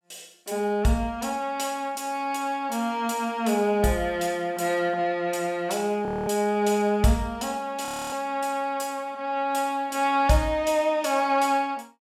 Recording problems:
frozen audio; at 6 s and at 8 s

